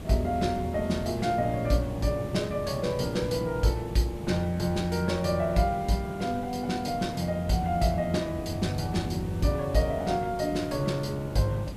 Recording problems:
background hiss; slope -6 dB per octave, SNR 11 dB

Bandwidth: 14.5 kHz